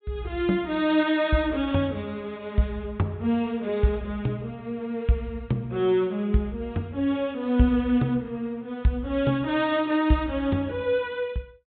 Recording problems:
treble missing; nothing above 4 kHz

